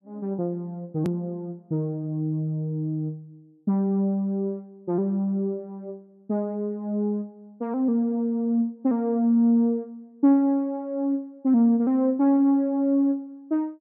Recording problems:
click at an edit; at 1 s

